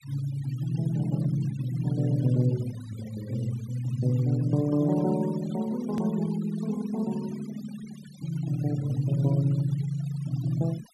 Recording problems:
noise reduction artefacts; signal-to-artefact ratio 20 dB
edit click; at 6 s

